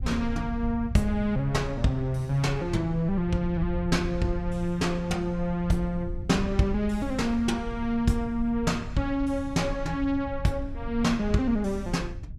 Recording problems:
rumble; below 86 Hz, SNR 10 dB

